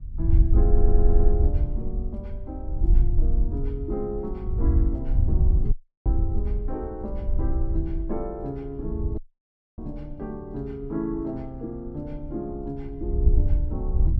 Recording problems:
wind noise; below 64 Hz, SNR -7 dB
stutter; at 0.5 s
dropout; at 5.5 s and at 9 s for 0.5 s

